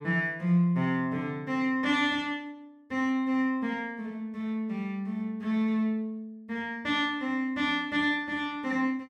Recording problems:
none

